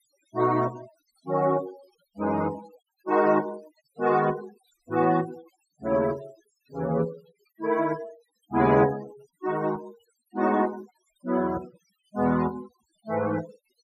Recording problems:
denoising artefacts; signal-to-artefact ratio 19 dB

